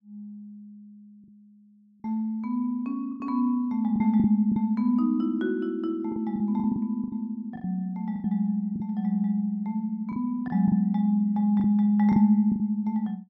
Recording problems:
packet loss; 8% of the sound replaced, filled with the last packet

